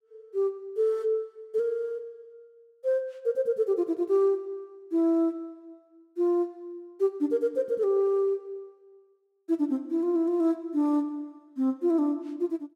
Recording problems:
none

